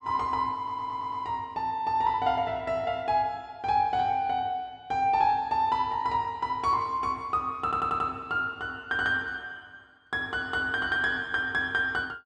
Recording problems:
stutter; at 0.5 s and at 7.5 s

